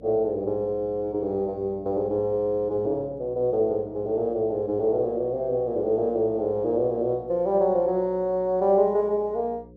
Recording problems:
mains hum; 60 Hz, harmonics up to 540 Hz, SNR 24 dB

